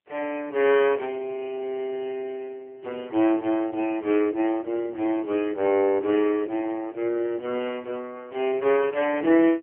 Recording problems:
phone line; 280 Hz to 3 kHz, AMR-NB

